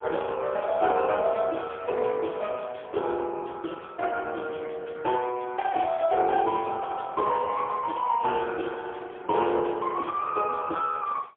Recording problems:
phone line; 300 Hz to 3.3 kHz, AMR-NB, then MP3

